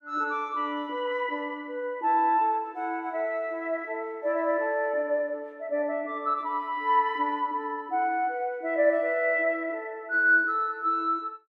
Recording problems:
none

